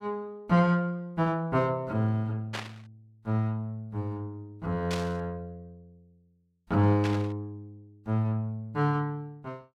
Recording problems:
burst of static; at 2.5 s, at 5 s and at 7 s; peak -2 dB vs average level

